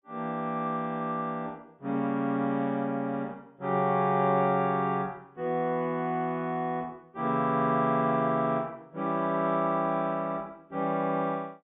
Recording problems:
treble missing; nothing above 3.6 kHz

